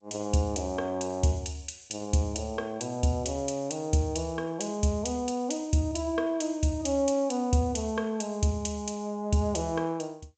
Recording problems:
codec artefacts; G.722, log-spectral distance 3 dB, nothing above 7.6 kHz

